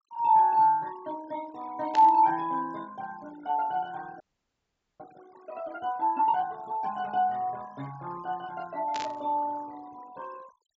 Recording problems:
treble cut off; nothing above 8 kHz
denoising artefacts; signal-to-artefact ratio 26 dB
burst of static; at 2 s and at 9 s; peak -6 dB vs average level
frozen audio; at 4 s for 1 s

